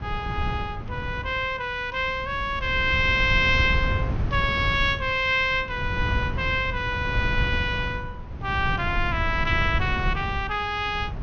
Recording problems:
treble cut off; nothing above 6.5 kHz
wind noise; below 130 Hz, SNR 6 dB

